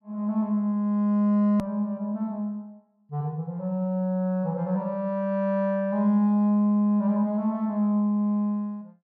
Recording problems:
click at an edit; at 1.5 s

